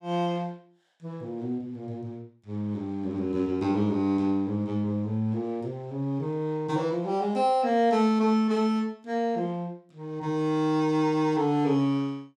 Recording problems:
none

